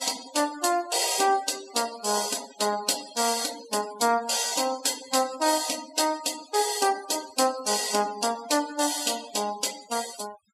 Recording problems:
noise reduction artefacts; signal-to-artefact ratio 15 dB

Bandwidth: 14.5 kHz